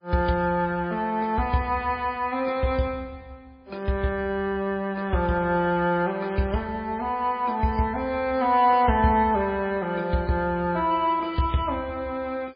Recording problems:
codec artefacts; MP3, log-spectral distance 2 dB, nothing above 4.8 kHz

